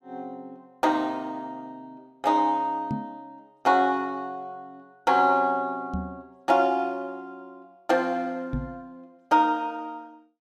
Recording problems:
microphone bump; at 3 s, at 6 s and at 8.5 s; peak -1 dB vs average level

